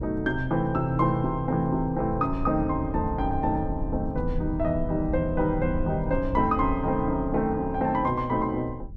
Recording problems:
rumble; below 92 Hz, SNR 9 dB

